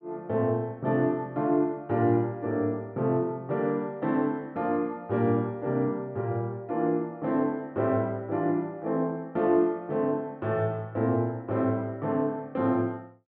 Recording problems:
none

